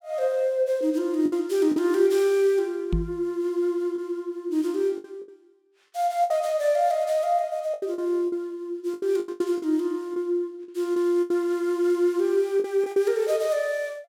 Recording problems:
lost packets; 7% of the sound replaced, filled with the last packet
knock on the microphone; at 3 s; peak +3 dB vs average level

